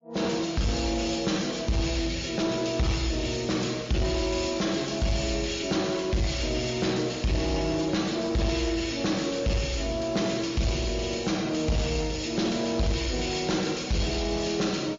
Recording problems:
lossy compression; MP3, then MP3, log-spectral distance 6 dB, nothing above 6.9 kHz
distorted audio; soft clipping, signal-to-distortion ratio 10 dB

